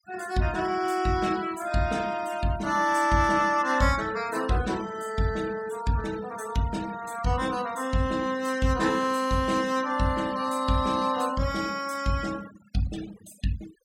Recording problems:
denoising artefacts; signal-to-artefact ratio 18 dB

